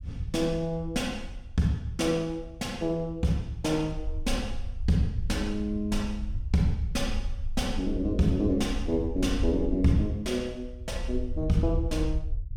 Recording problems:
rumble; below 68 Hz, SNR 7 dB

